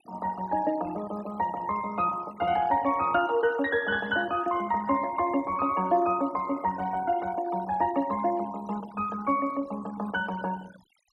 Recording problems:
noise reduction artefacts; signal-to-artefact ratio 17 dB

